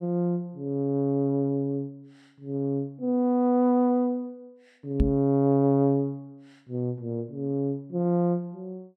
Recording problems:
microphone thump; at 5 s; peak +5 dB vs average level

